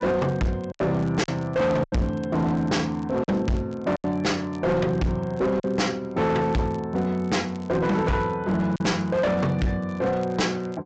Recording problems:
treble missing; nothing above 8 kHz
distortion; hard clipping, signal-to-distortion ratio 7 dB
crackling; vinyl, SNR 30 dB
packet loss; 4% of the sound replaced, filled with silence

